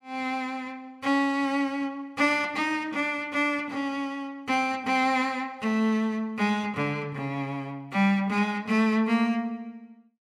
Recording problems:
none

